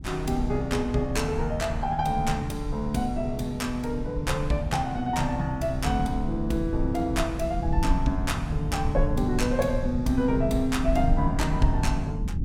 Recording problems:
rumble; below 130 Hz, SNR 4 dB

